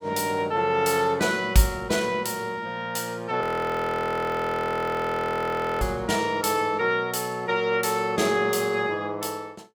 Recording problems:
frozen audio; at 3.5 s for 2.5 s

